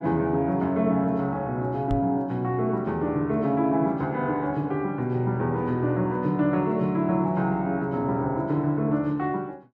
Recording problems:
microphone bump; at 2 s; peak 0 dB vs average level

